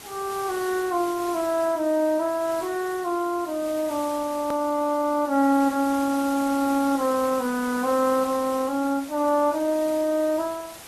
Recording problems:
lossy codec; AAC, log-spectral distance 5 dB
hiss; slope -2 dB per octave, SNR 15 dB
click at an edit; at 4.5 s

